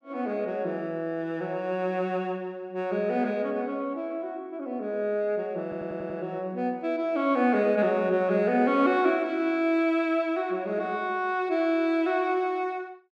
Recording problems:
audio stuttering; at 5.5 s

